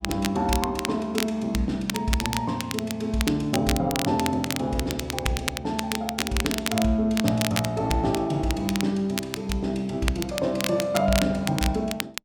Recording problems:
crackle; vinyl, SNR 6 dB

